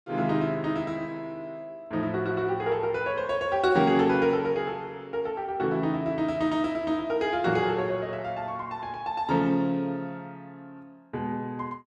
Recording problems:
none

